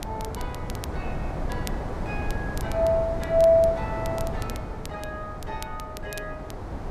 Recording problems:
wind on the microphone; below 440 Hz, SNR 8 dB
crackling; vinyl, SNR 19 dB

